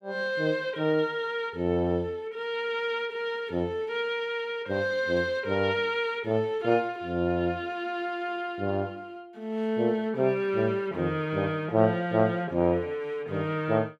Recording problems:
none

